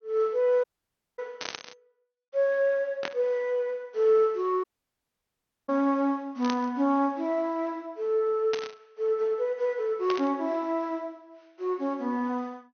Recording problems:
treble missing; nothing above 6.3 kHz
dropout; at 0.5 s for 0.5 s and at 4.5 s for 1 s
burst of static; 5 times, first at 1.5 s; peak -1 dB vs average level

